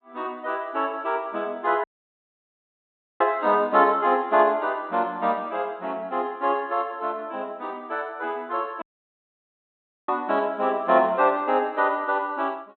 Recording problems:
treble missing; nothing above 4 kHz
dropout; at 2 s for 1.5 s and at 9 s for 1.5 s

